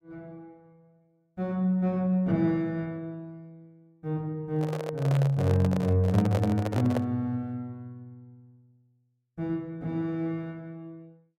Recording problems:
microphone handling noise; from 4.5 to 7 s; peak 0 dB vs average level

